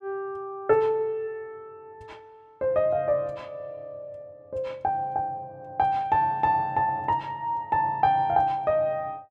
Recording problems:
none

